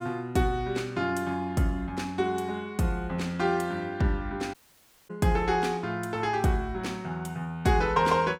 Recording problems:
dropout; at 4.5 s for 0.5 s

